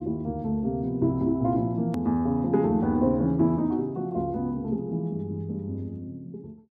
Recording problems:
hard cut with a click; at 2 s

